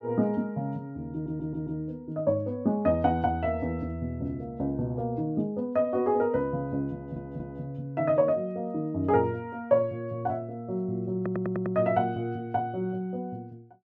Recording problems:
audio stuttering; at 1 s, at 7 s and at 11 s

